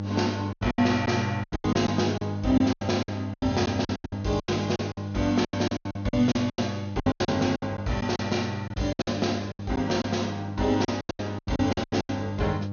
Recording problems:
treble cut off; nothing above 6.6 kHz
hum; 50 Hz, harmonics up to 900 Hz, SNR 7 dB
packet loss; 19% of the sound replaced, filled with silence

